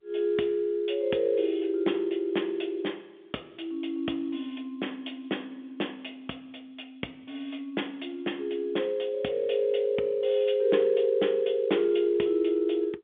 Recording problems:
telephone audio; 220 Hz to 3.6 kHz, G.711

